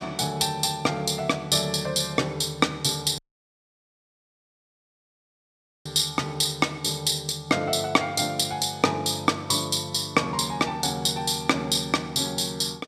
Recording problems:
audio cutting out; at 3 s for 2.5 s

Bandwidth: 15 kHz